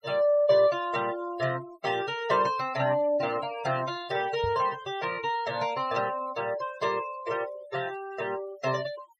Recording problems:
denoising artefacts; signal-to-artefact ratio 17 dB
microphone bump; at 4.5 s; peak -4 dB vs average level

